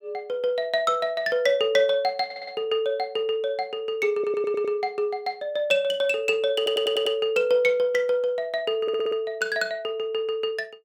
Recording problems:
stutter; 4 times, first at 2.5 s

